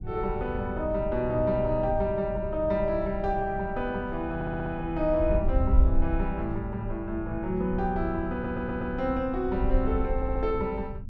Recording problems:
low-frequency rumble; below 110 Hz, SNR 10 dB
wind noise; below 62 Hz, SNR 4 dB
audio stuttering; at 4.5 s, at 8.5 s and at 10 s

